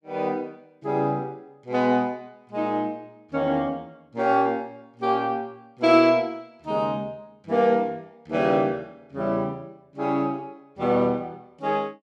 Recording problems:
none

